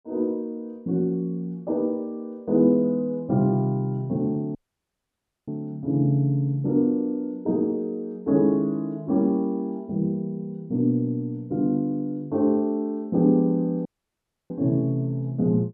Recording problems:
audio cutting out; at 4.5 s for 1 s and at 14 s for 0.5 s

